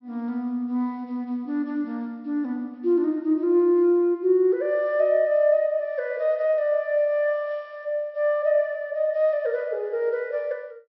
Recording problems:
low-pass filter; nothing above 5.6 kHz

